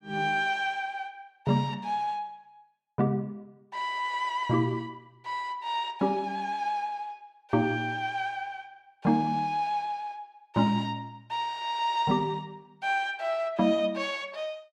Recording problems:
none

